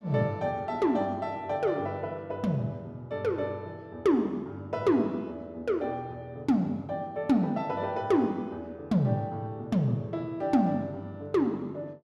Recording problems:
none

